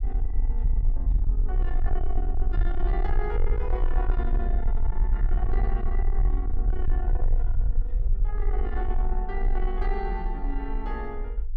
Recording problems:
distortion; soft clipping, signal-to-distortion ratio 10 dB
rumble; below 44 Hz, strongest tone 22 Hz, SNR -8 dB

